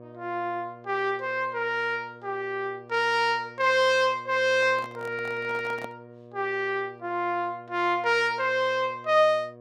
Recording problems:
mains hum; 60 Hz, harmonics up to 1.2 kHz, SNR 21 dB
handling noise; from 4.5 to 6 s; peak -8 dB vs average level

